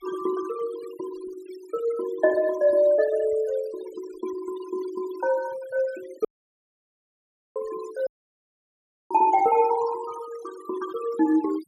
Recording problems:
noise reduction artefacts; signal-to-artefact ratio 18 dB
dropout; at 6.5 s for 1.5 s and at 8 s for 1 s

